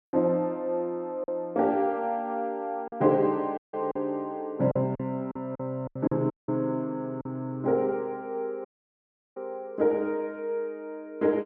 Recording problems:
lost packets; 4% of the sound replaced, filled with silence
dropout; at 3.5 s, at 6.5 s and at 8.5 s for 0.5 s

